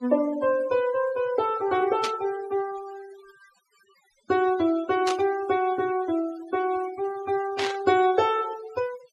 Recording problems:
noise reduction artefacts; signal-to-artefact ratio 18 dB
burst of static; at 2 s, at 5 s and at 7.5 s; peak 0 dB vs average level

